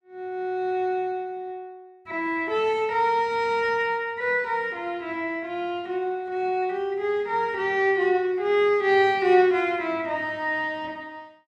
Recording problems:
none

